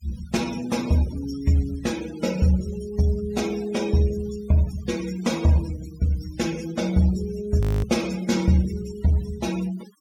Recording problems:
denoising artefacts; signal-to-artefact ratio 17 dB
frozen audio; at 7.5 s

